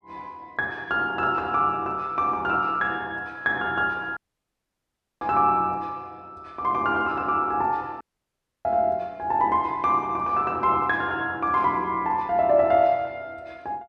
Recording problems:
audio cutting out; at 4 s for 1 s and at 8 s for 0.5 s

